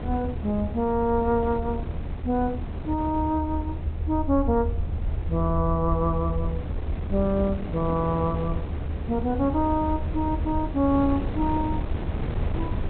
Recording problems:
treble missing; nothing above 4 kHz
rumble; below 80 Hz, SNR 7 dB
wind on the microphone; below 280 Hz, SNR 8 dB

